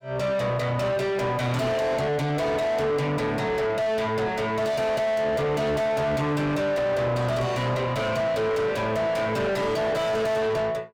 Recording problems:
distortion; soft clipping, signal-to-distortion ratio 5 dB

